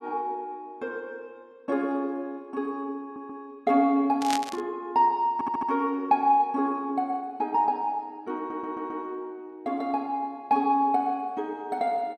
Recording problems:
stutter; at 3 s, at 5.5 s and at 8.5 s
burst of static; at 4 s; peak +1 dB vs average level

